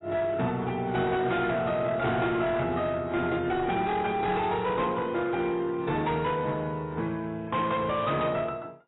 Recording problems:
lossy codec; AAC, log-spectral distance 2 dB, nothing above 3.8 kHz
distortion; hard clipping, signal-to-distortion ratio 10 dB

